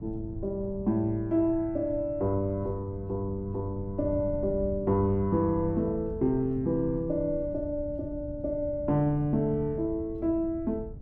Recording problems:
wind noise; below 130 Hz, SNR 13 dB

